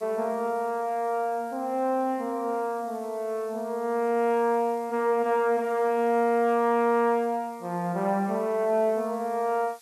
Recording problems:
hiss; SNR 27 dB

